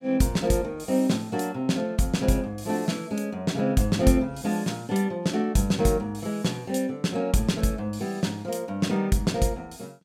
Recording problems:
none

